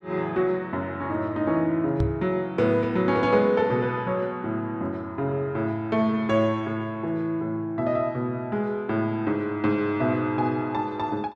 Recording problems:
knock on the microphone; at 2 s; peak +3 dB vs average level

